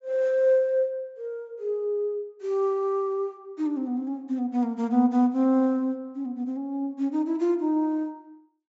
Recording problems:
treble missing; nothing above 8 kHz

